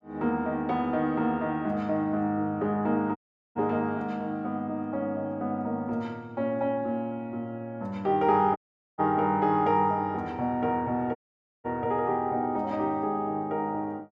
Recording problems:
dropout; at 3 s, at 8.5 s and at 11 s

